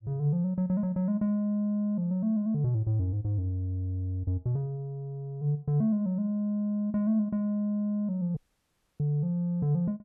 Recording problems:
audio cutting out; at 8.5 s for 0.5 s

